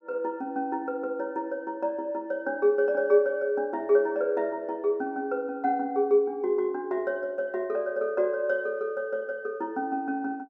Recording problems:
none

